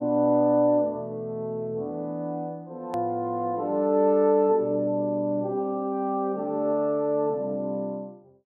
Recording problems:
click at an edit; at 3 s

